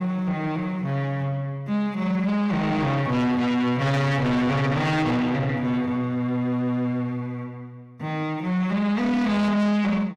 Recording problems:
distortion; soft clipping, signal-to-distortion ratio 7 dB

